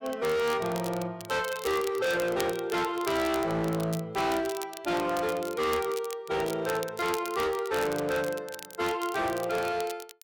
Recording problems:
distorted audio; hard clipping, signal-to-distortion ratio 7 dB
crackling; vinyl, SNR 14 dB

